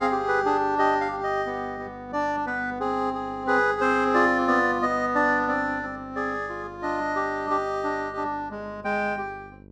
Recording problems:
electrical hum; 50 Hz, harmonics up to 950 Hz, SNR 22 dB

